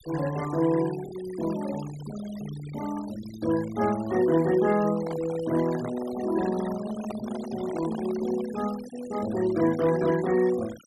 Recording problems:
noise reduction artefacts; signal-to-artefact ratio 16 dB
microphone handling noise; from 5 to 8.5 s; peak -6 dB vs average level

